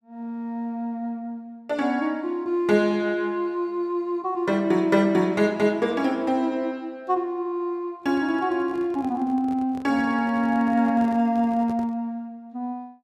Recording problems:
microphone handling noise; from 8 to 12 s; peak -11 dB vs average level

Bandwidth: 13.5 kHz